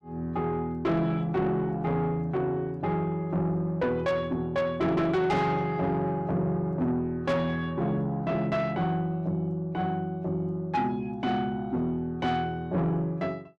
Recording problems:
distorted audio; soft clipping, signal-to-distortion ratio 10 dB

